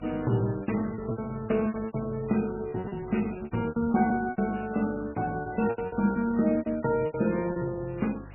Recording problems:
lossy compression; MP3, log-spectral distance 9 dB, nothing above 2.7 kHz
electrical hum; 50 Hz, harmonics up to 650 Hz, SNR 19 dB
background hiss; SNR 24 dB
lost packets; 17% of the sound replaced, filled with repeated pitch periods

